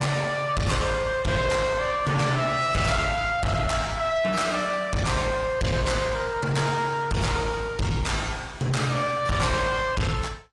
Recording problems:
codec artefacts; AAC, log-spectral distance 4 dB, nothing above 10.4 kHz
distorted audio; soft clipping, signal-to-distortion ratio 7 dB

